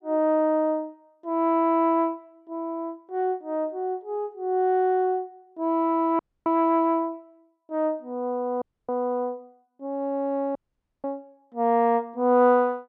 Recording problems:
dropout; at 6 s, at 8.5 s and at 11 s

